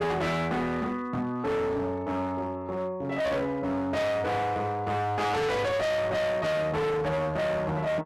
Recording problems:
distortion; hard clipping, signal-to-distortion ratio 6 dB

